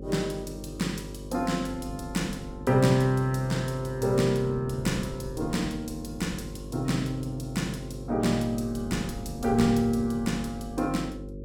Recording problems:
hum; 50 Hz, harmonics up to 550 Hz, SNR 12 dB
wind on the microphone; below 200 Hz, SNR 17 dB

